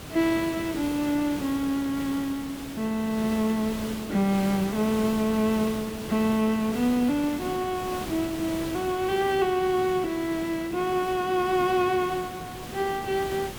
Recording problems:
background hiss; slope -4 dB per octave, SNR 11 dB

